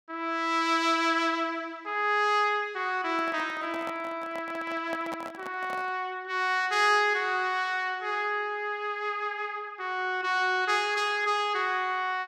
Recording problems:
handling noise; from 3 to 6 s; peak -6 dB vs average level

